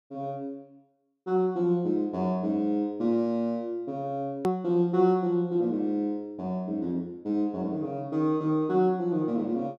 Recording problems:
hard cut with a click; at 4.5 s

